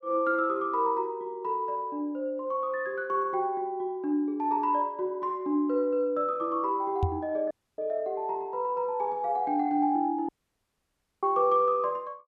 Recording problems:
knock on the microphone; at 7 s; peak +5 dB vs average level
dropout; at 7.5 s and at 10 s for 1 s

